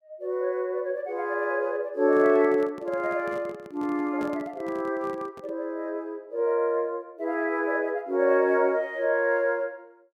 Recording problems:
microphone handling noise; from 2 to 5.5 s; peak -9 dB vs average level

